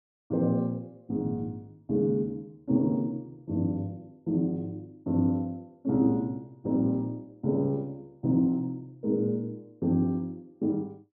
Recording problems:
none

